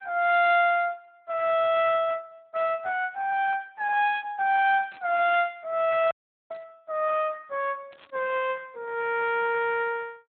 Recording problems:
low-pass filter; nothing above 3.5 kHz
codec artefacts; Speex, log-spectral distance 3 dB
burst of static; at 5 s, at 6.5 s and at 8 s; peak -19 dB vs average level
audio cutting out; at 6 s

